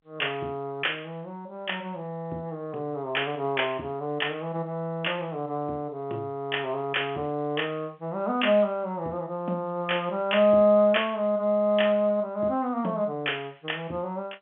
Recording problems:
telephone audio; 240 Hz to 3.4 kHz, G.711

